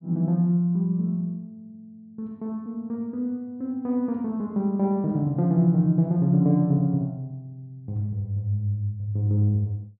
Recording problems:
treble cut off; nothing above 4.7 kHz

